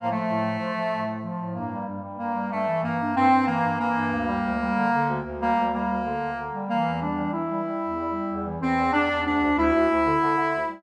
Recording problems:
none

